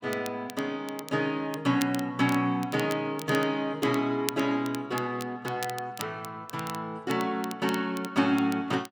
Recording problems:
crackle; vinyl, SNR 14 dB

